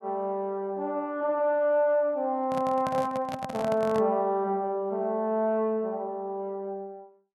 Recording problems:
microphone handling noise; from 2.5 to 4 s; peak -4 dB vs average level

